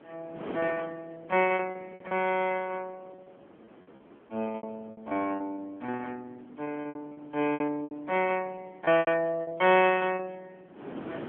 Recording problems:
phone line; 260 Hz to 3.3 kHz, AMR-NB
wind on the microphone; below 680 Hz, SNR 19 dB
packet loss; 16% of the sound replaced, filled with repeated pitch periods

